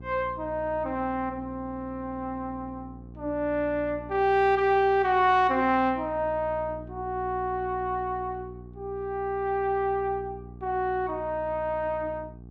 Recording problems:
hum; 60 Hz, harmonics up to 780 Hz, SNR 17 dB

